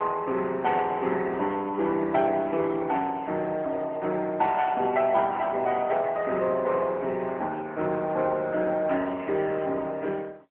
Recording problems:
telephone audio; 240 Hz to 3.6 kHz, AMR-NB

